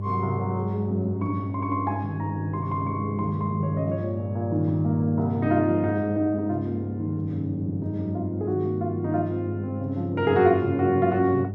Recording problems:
mains hum; 50 Hz, harmonics up to 600 Hz, SNR 6 dB

